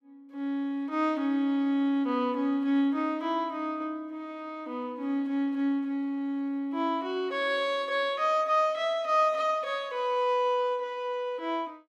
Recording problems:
none

